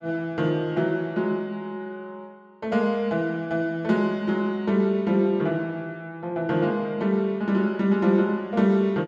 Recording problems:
none

